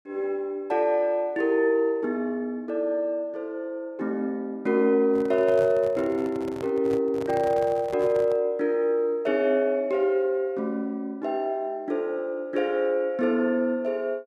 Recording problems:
handling noise; from 5 to 8.5 s; peak -9 dB vs average level

